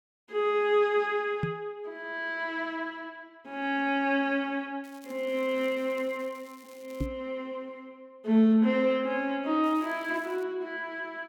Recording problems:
knock on the microphone; at 1.5 s and at 7 s; peak +2 dB vs average level
crackling; from 5 to 7 s and at 9.5 s; loose cable, SNR 27 dB

